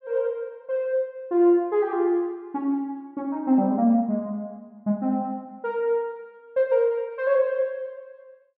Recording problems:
none

